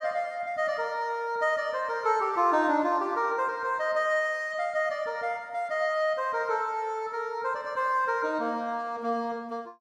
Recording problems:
none

